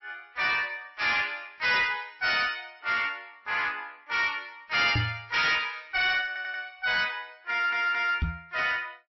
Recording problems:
lossy codec; MP3, log-spectral distance 4 dB, nothing above 5.7 kHz
distortion; soft clipping, signal-to-distortion ratio 10 dB
microphone thump; at 5 s and at 8 s; peak +3 dB vs average level
stutter; at 6.5 s and at 7.5 s

